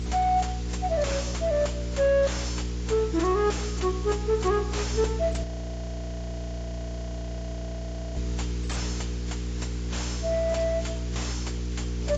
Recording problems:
lossy codec; AAC, log-spectral distance 9 dB, nothing above 7.6 kHz
distorted audio; soft clipping, signal-to-distortion ratio 5 dB
hum; 60 Hz, harmonics up to 480 Hz, SNR 6 dB
hiss; SNR 15 dB
audio freezing; at 5.5 s for 2.5 s

